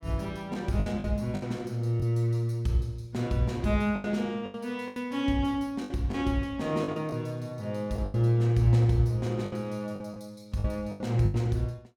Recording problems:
packet loss; 9% of the sound replaced, filled with the last packet

